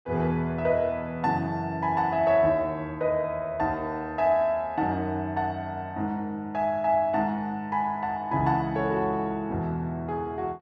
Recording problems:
none

